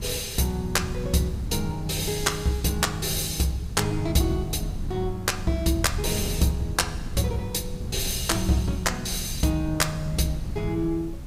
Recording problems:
hiss; slope -2 dB per octave, SNR 27 dB
wind on the microphone; below 140 Hz, SNR 9 dB

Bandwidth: 15.5 kHz